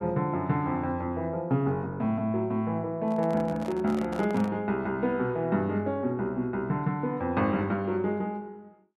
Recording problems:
microphone handling noise; from 3 to 4.5 s; peak -8 dB vs average level

